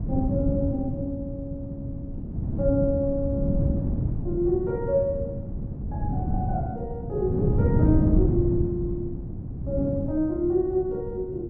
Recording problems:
wind on the microphone; below 200 Hz, SNR 0 dB

